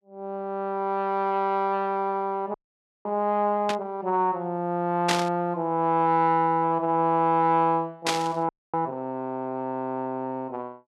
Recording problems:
audio freezing; at 2.5 s for 0.5 s and at 8.5 s
burst of static; at 3.5 s, at 5 s and at 8 s; peak +5 dB vs average level

